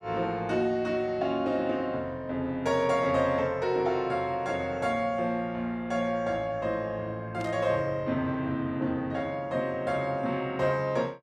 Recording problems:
burst of static; at 7.5 s; peak -15 dB vs average level

